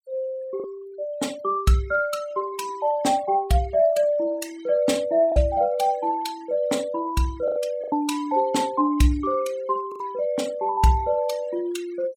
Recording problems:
noise reduction artefacts; signal-to-artefact ratio 21 dB
packet loss; 3% of the sound replaced, filled with the last packet

